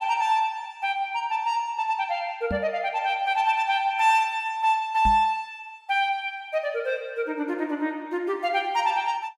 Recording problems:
microphone bump; at 2.5 s and at 5 s; peak -2 dB vs average level

